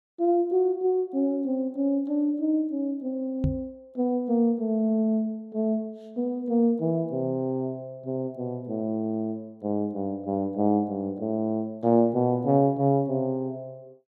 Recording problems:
microphone thump; at 3.5 s; peak +4 dB vs average level

